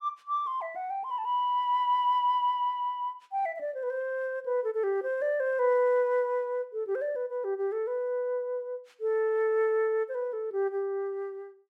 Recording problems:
none

